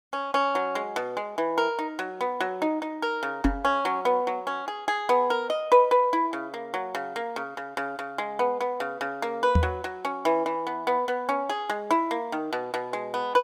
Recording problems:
knock on the microphone; at 3.5 s and at 9.5 s; peak +8 dB vs average level

